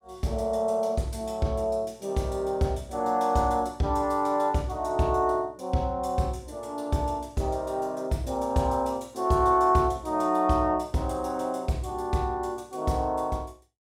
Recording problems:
none

